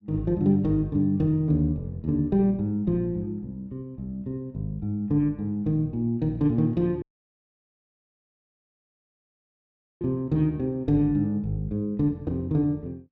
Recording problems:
dropout; at 7 s for 3 s

